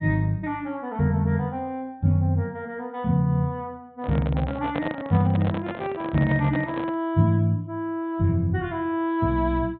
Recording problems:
low-pass filter; nothing above 4 kHz
microphone handling noise; from 4 to 7 s; peak -2 dB vs average level

